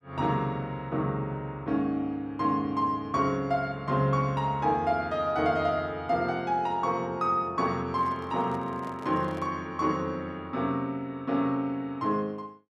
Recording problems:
handling noise; from 8 to 9.5 s; peak -11 dB vs average level

